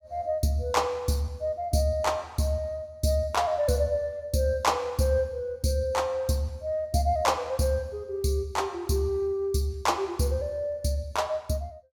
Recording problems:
none

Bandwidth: 18.5 kHz